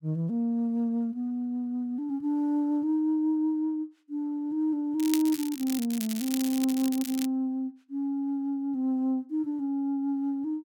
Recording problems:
crackle; from 5 to 7.5 s; loose cable, SNR 9 dB

